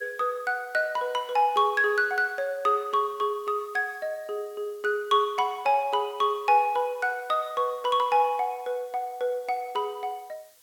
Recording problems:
background hiss; slope +2 dB per octave, SNR 29 dB

